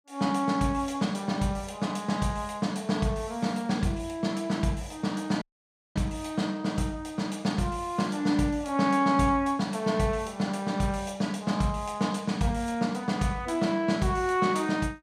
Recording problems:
audio cutting out; at 5.5 s for 0.5 s

